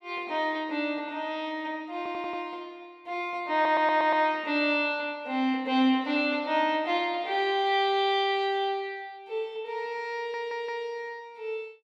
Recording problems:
stutter; at 2 s, at 3.5 s and at 10 s

